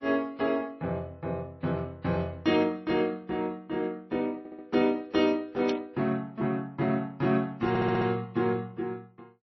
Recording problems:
lossy compression; MP3, then AAC, log-spectral distance 2 dB, nothing above 5.7 kHz
audio stuttering; at 4.5 s and at 7.5 s
static burst; at 5.5 s; peak -4 dB vs average level

